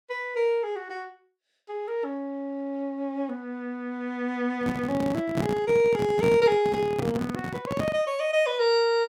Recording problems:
microphone handling noise; from 4.5 to 8 s; peak +2 dB vs average level

